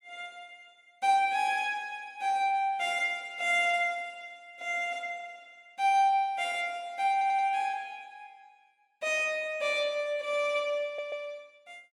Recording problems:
audio stuttering; at 7 s and at 11 s

